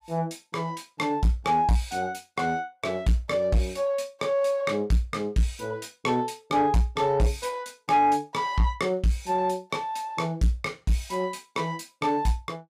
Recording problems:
distorted audio; soft clipping, signal-to-distortion ratio 12 dB

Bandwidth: 15.5 kHz